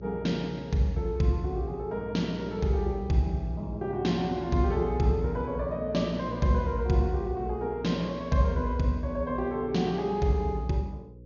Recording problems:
treble missing; nothing above 6.8 kHz
hum; 60 Hz, harmonics up to 540 Hz, SNR 15 dB

